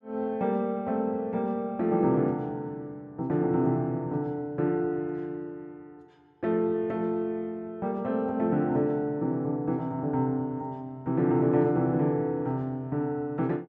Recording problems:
none

